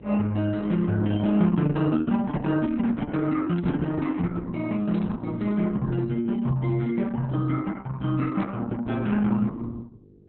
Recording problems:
lossy codec; Opus, log-spectral distance 3 dB
hum; 50 Hz, harmonics up to 500 Hz, SNR 24 dB
static burst; at 3.5 s, at 5 s and at 8.5 s; peak -15 dB vs average level

